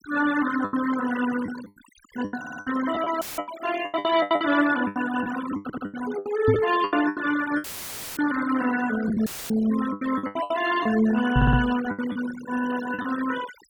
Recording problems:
denoising artefacts; signal-to-artefact ratio 11 dB
lost packets; 15% of the sound replaced, filled with the last packet
stutter; at 2.5 s, at 5.5 s and at 11 s
audio cutting out; at 3 s, at 7.5 s for 0.5 s and at 9.5 s; filled with static
microphone thump; at 6.5 s and at 11 s; peak +5 dB vs average level

